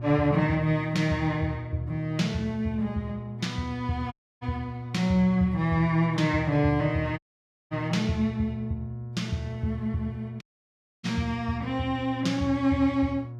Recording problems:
hum; 60 Hz, harmonics up to 720 Hz, SNR 10 dB
dropout; at 4 s, at 7 s for 0.5 s and at 10 s for 0.5 s

